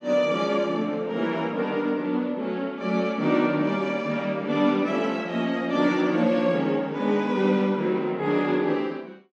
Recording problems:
none

